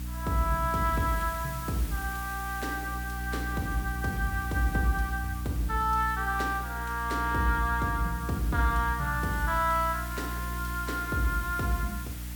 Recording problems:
hum; 60 Hz, harmonics up to 300 Hz, SNR 6 dB
background hiss; slope 0 dB per octave, SNR 13 dB

